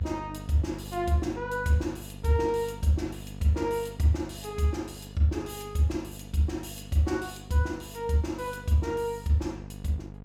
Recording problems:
hum; 50 Hz, harmonics up to 1 kHz, SNR 14 dB

